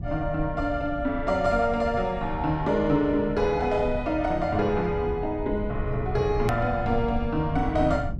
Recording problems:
rumble; below 120 Hz, SNR 10 dB
hard cut with a click; at 6.5 s

